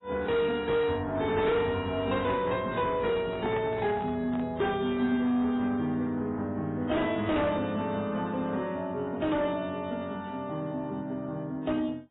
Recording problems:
codec artefacts; AAC, then AAC, log-spectral distance 2 dB, nothing above 3.2 kHz
distorted audio; soft clipping, signal-to-distortion ratio 12 dB
handling noise; from 3 to 4.5 s; peak -5 dB vs average level

